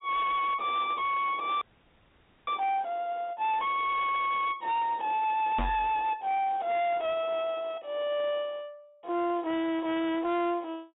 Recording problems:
treble cut off; nothing above 4 kHz
distortion; hard clipping, signal-to-distortion ratio 11 dB
audio freezing; at 1.5 s for 1 s
knock on the microphone; at 5.5 s; peak +2 dB vs average level

